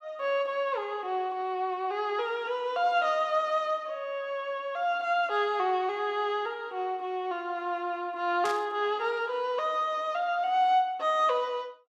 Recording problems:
static burst; at 8.5 s; peak -5 dB vs average level

